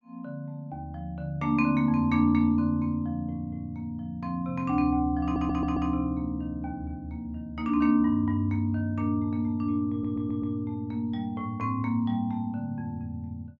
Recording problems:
stutter; at 5 s and at 10 s

